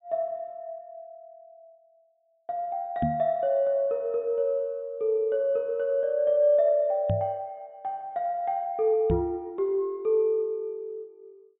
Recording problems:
low-pass filter; nothing above 4 kHz
microphone thump; at 3 s, at 7 s and at 9 s; peak +2 dB vs average level

